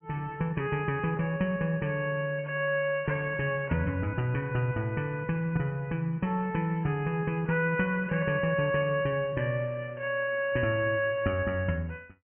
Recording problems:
treble missing; nothing above 3 kHz

